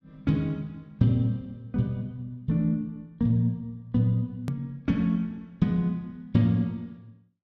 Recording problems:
edit click; at 4.5 s

